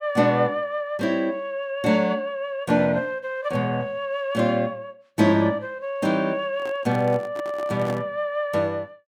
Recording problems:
handling noise; from 6.5 to 8 s; peak -6 dB vs average level

